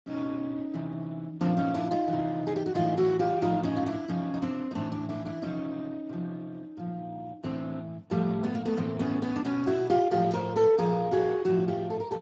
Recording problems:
lossy codec; Speex, log-spectral distance 3 dB

